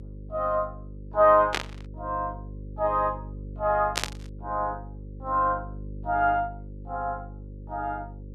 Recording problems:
hum; 50 Hz, harmonics up to 550 Hz, SNR 14 dB
static burst; at 1.5 s and at 4 s; peak +4 dB vs average level

